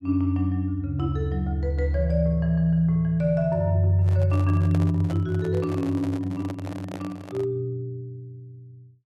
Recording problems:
handling noise; from 4 to 7.5 s; peak -7 dB vs average level

